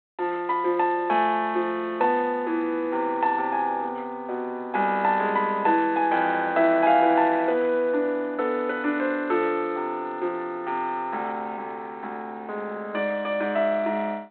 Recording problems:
phone line; 220 Hz to 3.6 kHz, G.726

